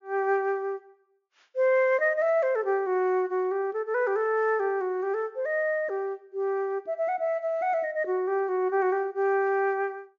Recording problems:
treble cut off; nothing above 7 kHz

